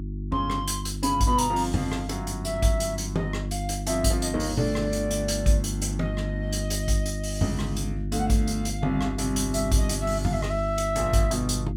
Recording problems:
hum; 50 Hz, harmonics up to 350 Hz, SNR 5 dB

